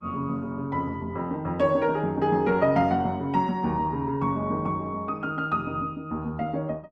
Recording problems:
codec artefacts; Opus, log-spectral distance 2 dB

